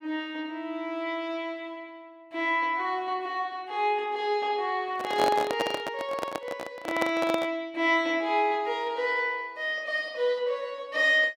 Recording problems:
microphone handling noise; from 5 to 7.5 s; peak +4 dB vs average level

